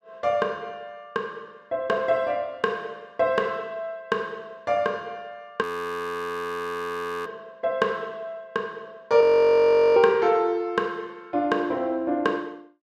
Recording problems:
audio freezing; at 5.5 s for 1.5 s and at 9 s for 1 s

